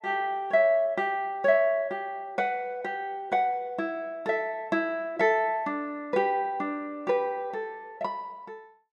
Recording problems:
none

